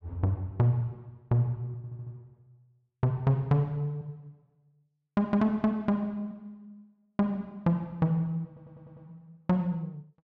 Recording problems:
stutter; at 2 s and at 8.5 s

